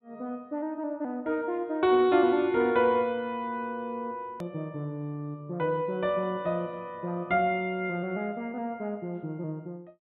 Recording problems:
treble cut off; nothing above 4 kHz
click at an edit; at 4.5 s

